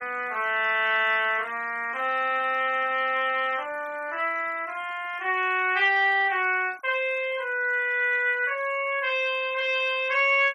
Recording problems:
denoising artefacts; signal-to-artefact ratio 26 dB

